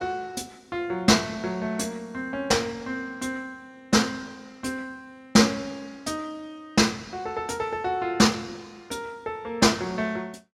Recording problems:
none

